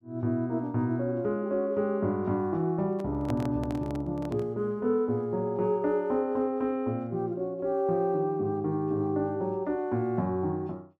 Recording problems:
handling noise; from 3 to 4.5 s; peak -5 dB vs average level

